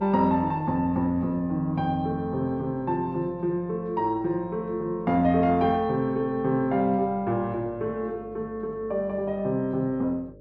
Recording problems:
hum; 50 Hz, harmonics up to 600 Hz, SNR 22 dB

